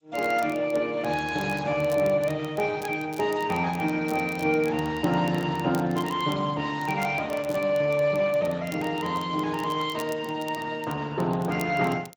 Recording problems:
lossy compression; G.722, then Speex, log-spectral distance 4 dB
crackle; vinyl, SNR 21 dB

